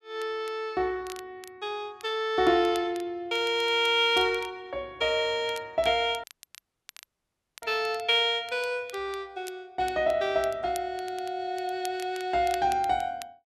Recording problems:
crackle; vinyl, SNR 21 dB
audio cutting out; at 6 s for 1.5 s

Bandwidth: 12.5 kHz